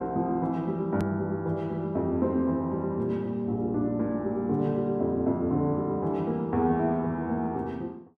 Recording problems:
edit click; at 1 s

